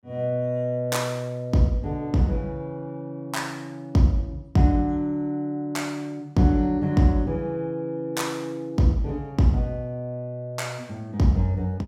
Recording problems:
none

